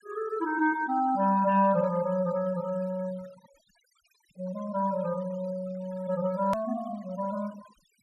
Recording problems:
noise reduction artefacts; signal-to-artefact ratio 23 dB
edit click; at 6.5 s

